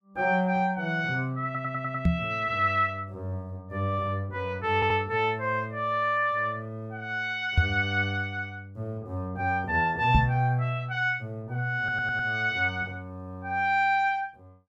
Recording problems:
audio stuttering; at 1.5 s, at 5 s and at 12 s
microphone bump; at 2 s, at 7.5 s and at 10 s; peak +8 dB vs average level

